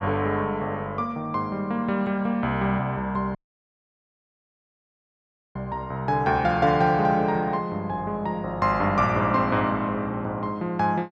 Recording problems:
audio cutting out; at 3.5 s for 2 s

